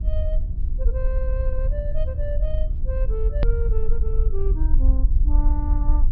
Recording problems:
low-pass filter; nothing above 5.5 kHz
hum; 60 Hz, harmonics up to 720 Hz, SNR 11 dB
low-frequency rumble; below 52 Hz, SNR -10 dB
click at an edit; at 3.5 s

